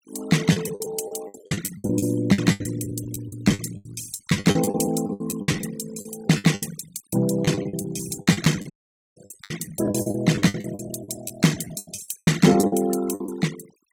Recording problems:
noise reduction artefacts; signal-to-artefact ratio 15 dB
lost packets; 19% of the sound replaced, filled with the last packet
audio cutting out; at 8.5 s

